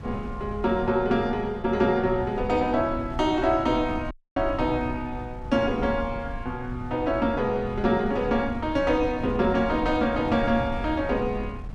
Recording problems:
wind noise; below 120 Hz, SNR 12 dB
dropout; at 4 s

